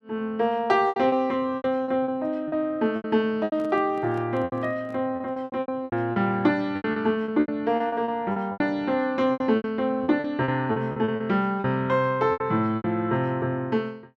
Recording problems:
lost packets; 15% of the sound replaced, filled with repeated pitch periods
microphone handling noise; from 3.5 to 5 s; peak -13 dB vs average level

